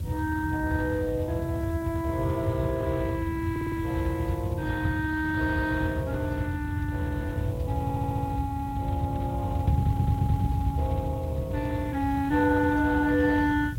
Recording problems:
codec artefacts; Speex, log-spectral distance 2 dB
background hiss; slope +4 dB per octave, SNR 25 dB
wind on the microphone; below 130 Hz, SNR 1 dB
stutter; at 3.5 s, at 8 s and at 10 s

